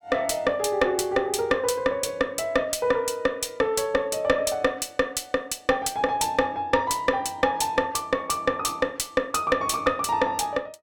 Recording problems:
distortion; soft clipping, signal-to-distortion ratio 11 dB

